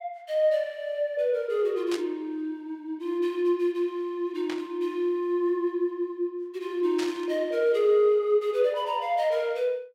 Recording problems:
burst of static; at 2 s, at 4.5 s and at 7 s; peak -5 dB vs average level

